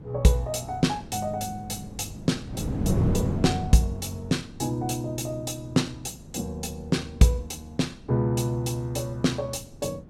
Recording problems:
wind on the microphone; below 250 Hz, SNR 7 dB

